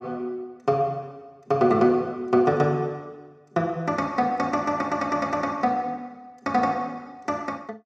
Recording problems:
none

